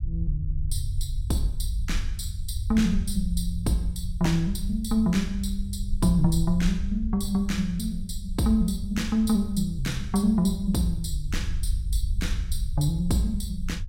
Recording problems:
low-frequency rumble; below 70 Hz, SNR 6 dB

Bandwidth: 16 kHz